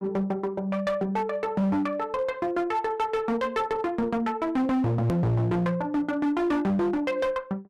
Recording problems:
distortion; hard clipping, signal-to-distortion ratio 7 dB
click at an edit; at 5 s

